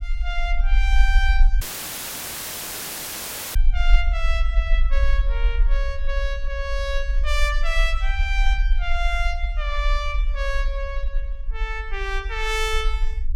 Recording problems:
low-frequency rumble; below 46 Hz, SNR -3 dB
audio cutting out; at 1.5 s for 2 s

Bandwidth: 16.5 kHz